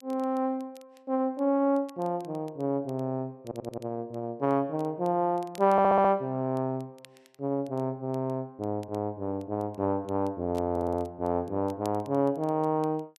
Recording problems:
crackle; vinyl, SNR 29 dB
stutter; at 3.5 s, at 5.5 s and at 11 s

